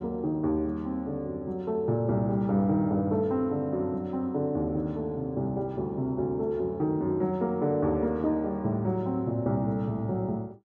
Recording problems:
none

